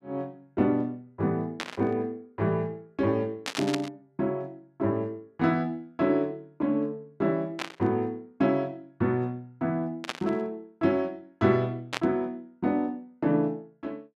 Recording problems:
burst of static; 5 times, first at 1.5 s; peak +2 dB vs average level

